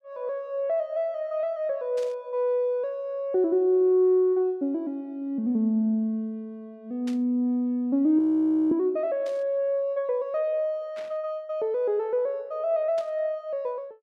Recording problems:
burst of static; 5 times, first at 2 s; peak -13 dB vs average level
audio freezing; at 8 s for 0.5 s

